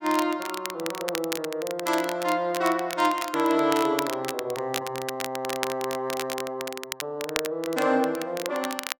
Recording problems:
crackling; vinyl, SNR 8 dB

